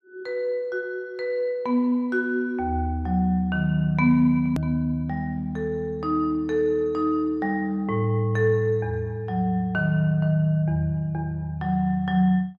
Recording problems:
hard cut with a click; at 4.5 s

